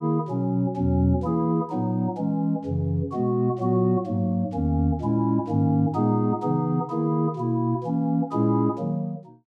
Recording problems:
none

